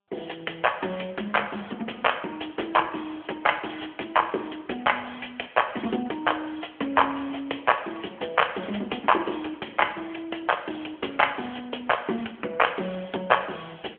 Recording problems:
telephone audio; 320 Hz to 3.2 kHz, AMR-NB

